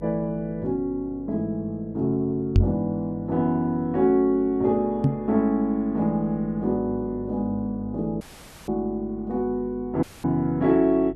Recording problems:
hum; 50 Hz, harmonics up to 450 Hz, SNR 19 dB
knock on the microphone; at 2.5 s and at 5 s; peak +9 dB vs average level
audio cutting out; at 8 s and at 10 s

